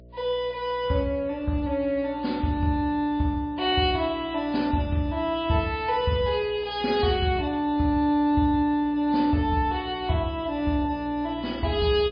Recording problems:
lossy codec; MP3, log-spectral distance 2 dB, nothing above 4.1 kHz
hum; 60 Hz, harmonics up to 660 Hz, SNR 22 dB

